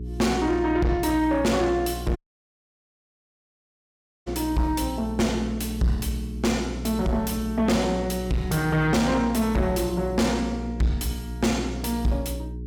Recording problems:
distorted audio; soft clipping, signal-to-distortion ratio 6 dB
electrical hum; 60 Hz, harmonics up to 420 Hz, SNR 9 dB
audio cutting out; at 2 s for 2 s

